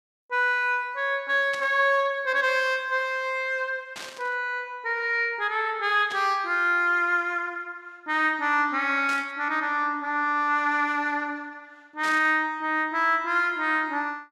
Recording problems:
burst of static; 5 times, first at 1.5 s; peak -9 dB vs average level

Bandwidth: 14.5 kHz